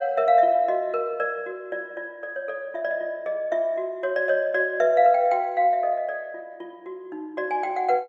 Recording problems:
none

